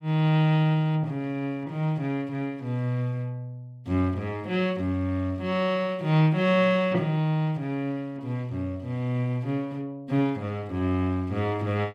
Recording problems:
none

